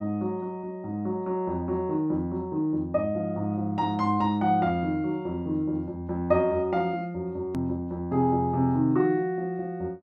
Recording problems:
click at an edit; at 7.5 s

